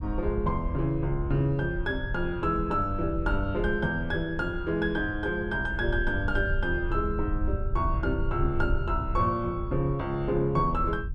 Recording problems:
rumble; below 76 Hz, SNR 6 dB

